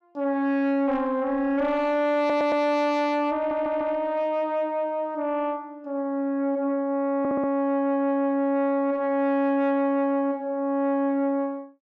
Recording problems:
distortion; soft clipping, signal-to-distortion ratio 11 dB
stutter; at 2 s, at 3.5 s and at 7 s

